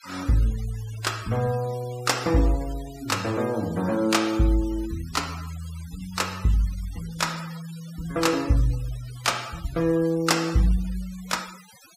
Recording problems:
noise reduction artefacts; signal-to-artefact ratio 17 dB

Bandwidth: 15.5 kHz